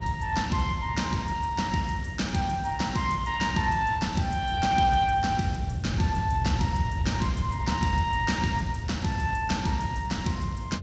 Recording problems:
lossy compression; Speex, log-spectral distance 3 dB, nothing above 7.3 kHz
hum; 60 Hz, harmonics up to 720 Hz, SNR 19 dB
rumble; below 120 Hz, SNR 6 dB

